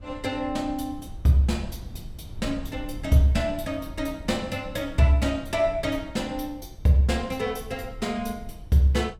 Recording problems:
wind noise; below 100 Hz, SNR 16 dB

